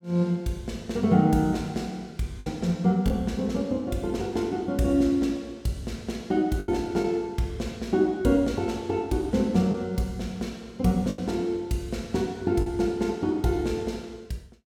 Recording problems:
lost packets; 2% of the sound replaced, filled with the last packet

